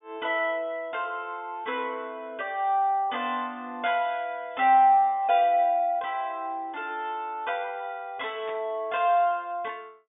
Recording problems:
treble cut off; nothing above 3.6 kHz
burst of static; at 8.5 s; peak -13 dB vs average level

